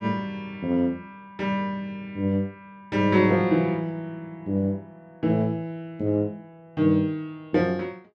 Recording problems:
none

